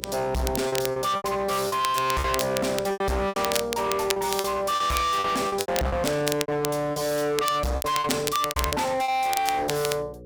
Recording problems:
distorted audio; hard clipping, signal-to-distortion ratio 6 dB
hum; 60 Hz, harmonics up to 600 Hz, SNR 21 dB
crackle; vinyl, SNR 8 dB
lost packets; 11% of the sound replaced, filled with repeated pitch periods

